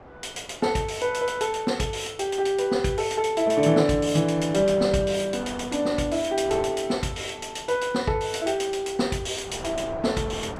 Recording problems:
wind on the microphone; below 950 Hz, SNR 18 dB

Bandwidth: 14.5 kHz